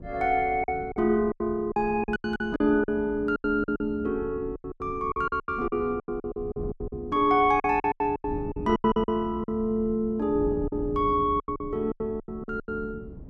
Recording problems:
wind on the microphone; below 220 Hz, SNR 14 dB
packet loss; 17% of the sound replaced, filled with silence

